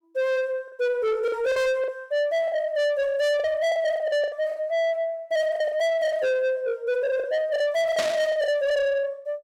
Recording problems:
distortion; soft clipping, signal-to-distortion ratio 6 dB
lost packets; 9% of the sound replaced, filled with the last packet
static burst; at 8 s; peak -1 dB vs average level

